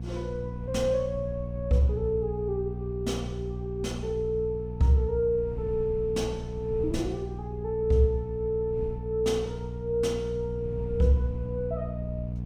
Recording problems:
electrical hum; 60 Hz, harmonics up to 480 Hz, SNR 7 dB
wind on the microphone; below 130 Hz, SNR 16 dB

